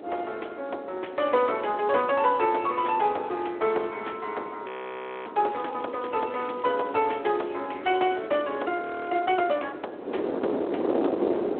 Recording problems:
phone line; 300 Hz to 3.6 kHz, Speex
wind on the microphone; below 570 Hz, SNR 8 dB
frozen audio; at 4.5 s for 0.5 s and at 9 s
crackling; from 5.5 to 7.5 s and at 7.5 s; loose cable, SNR 27 dB

